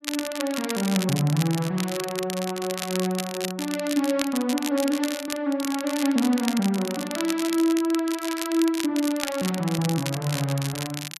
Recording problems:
crackling; vinyl, SNR 8 dB

